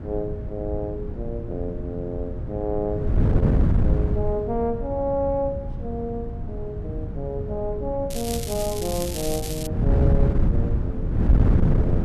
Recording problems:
wind on the microphone; below 150 Hz, SNR -3 dB
crackle; from 8 to 9.5 s; loose cable, SNR 4 dB

